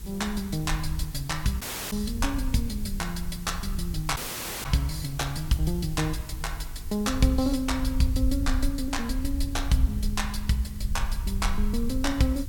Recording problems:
mains hum; 50 Hz, harmonics up to 450 Hz, SNR 19 dB
hiss; slope 0 dB per octave, SNR 18 dB
wind noise; below 66 Hz, SNR 5 dB
dropout; at 1.5 s and at 4 s

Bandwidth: 17 kHz